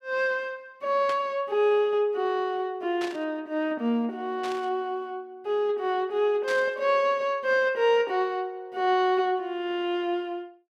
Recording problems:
static burst; 4 times, first at 1 s; peak -7 dB vs average level

